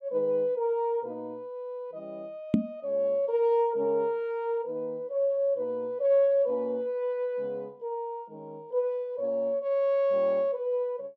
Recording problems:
microphone thump; at 2.5 s; peak +9 dB vs average level

